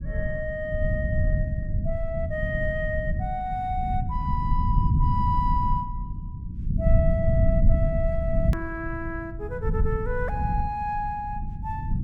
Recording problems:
rumble; below 120 Hz, SNR -2 dB
hard cut with a click; at 8.5 s

